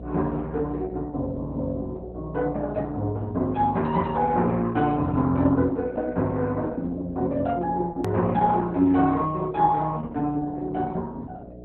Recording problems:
lossy codec; Opus, log-spectral distance 2 dB
electrical hum; 60 Hz, harmonics up to 720 Hz, SNR 14 dB
edit click; at 8 s

